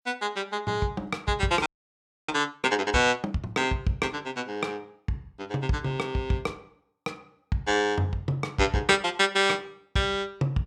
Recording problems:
audio freezing; at 1.5 s for 0.5 s

